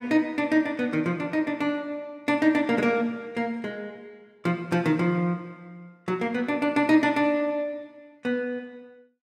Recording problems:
none

